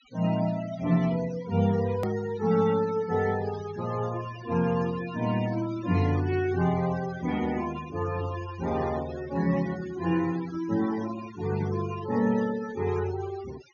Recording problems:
treble missing; nothing above 6.8 kHz
noise reduction artefacts; signal-to-artefact ratio 16 dB
edit click; at 2 s

